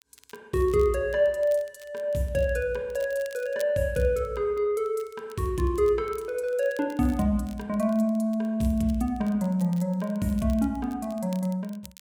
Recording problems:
crackle; vinyl, SNR 26 dB

